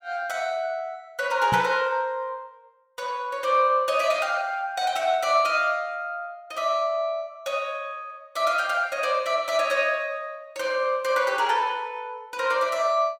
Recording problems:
microphone thump; at 1.5 s; peak -2 dB vs average level

